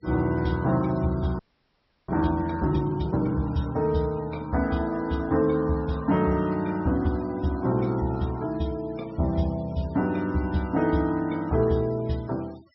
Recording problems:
low-pass filter; nothing above 5.6 kHz
denoising artefacts; signal-to-artefact ratio 24 dB
audio freezing; at 1.5 s for 0.5 s

